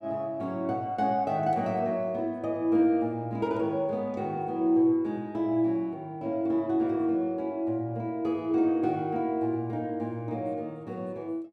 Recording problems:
none

